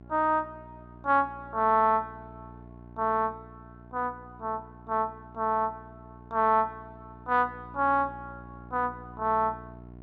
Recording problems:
electrical hum; 60 Hz, harmonics up to 1.1 kHz, SNR 20 dB

